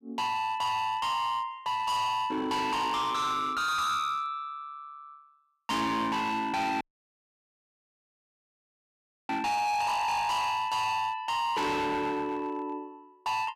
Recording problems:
distorted audio; hard clipping, signal-to-distortion ratio 7 dB
dropout; at 7 s for 2.5 s

